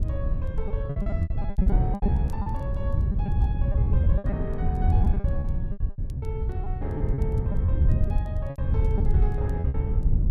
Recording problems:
wind noise; below 100 Hz, SNR -11 dB
crackling; vinyl, SNR 28 dB
packet loss; 15% of the sound replaced, filled with repeated pitch periods

